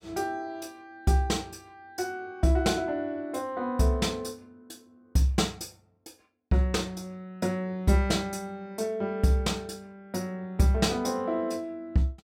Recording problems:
none

